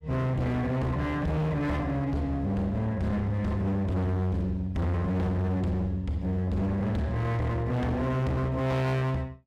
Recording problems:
distorted audio; hard clipping, signal-to-distortion ratio 6 dB

